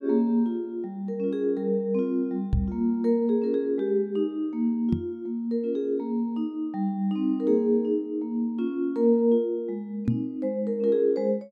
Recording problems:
microphone thump; at 2.5 s, at 5 s and at 10 s; peak +5 dB vs average level

